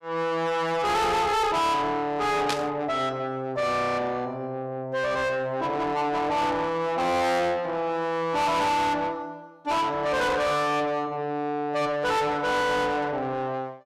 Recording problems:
distorted audio; soft clipping, signal-to-distortion ratio 6 dB
burst of static; at 2.5 s; peak +2 dB vs average level

